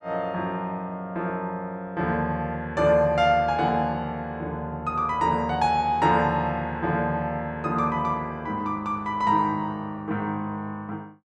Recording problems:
none

